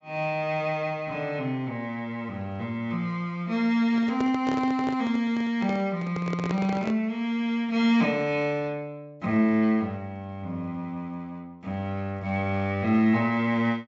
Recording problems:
low-pass filter; nothing above 8 kHz
handling noise; from 4 to 7 s; peak -2 dB vs average level

